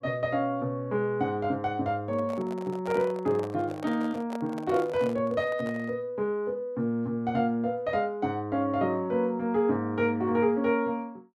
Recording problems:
microphone handling noise; from 2 to 6 s; peak -5 dB vs average level

